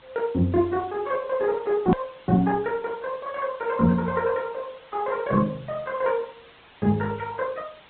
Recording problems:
treble missing; nothing above 4 kHz
codec artefacts; Opus, log-spectral distance 6 dB
hiss; SNR 27 dB
click at an edit; at 2 s

